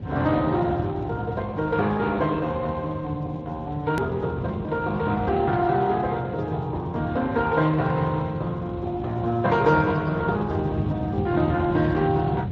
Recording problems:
lossy compression; AAC, then Speex, log-spectral distance 3 dB, nothing above 13.1 kHz
rumble; below 200 Hz, SNR 9 dB
edit click; at 4 s

